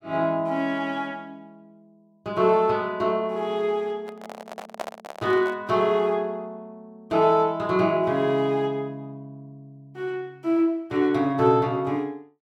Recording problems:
microphone handling noise; from 4 to 5.5 s; peak -2 dB vs average level

